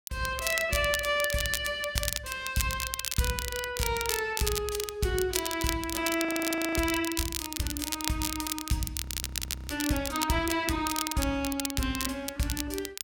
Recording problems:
crackle; vinyl, SNR 3 dB
audio freezing; at 6.5 s for 0.5 s and at 9 s for 0.5 s

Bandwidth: 16.5 kHz